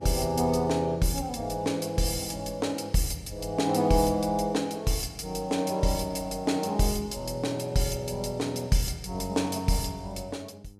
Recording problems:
hum; 50 Hz, harmonics up to 900 Hz, SNR 24 dB

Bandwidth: 14.5 kHz